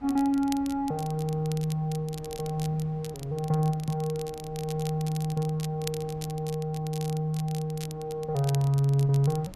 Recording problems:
wind noise; below 310 Hz, SNR 21 dB
crackling; vinyl, SNR 16 dB

